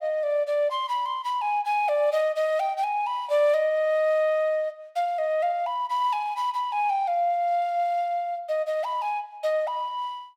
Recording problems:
none

